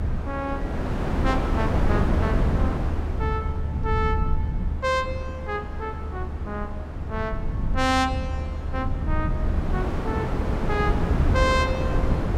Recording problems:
rumble; below 100 Hz, SNR 0 dB
wind on the microphone; below 460 Hz, SNR 1 dB

